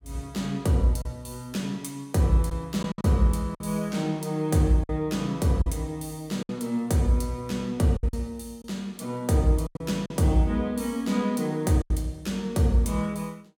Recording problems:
packet loss; 5% of the sound replaced, filled with silence

